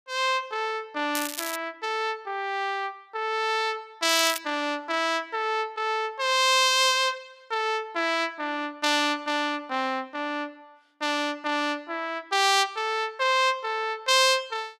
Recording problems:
crackling; at 1 s and at 4 s; loose cable, SNR 9 dB

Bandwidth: 15 kHz